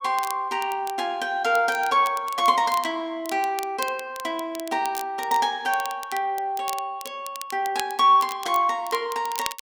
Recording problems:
crackling; vinyl, SNR 15 dB

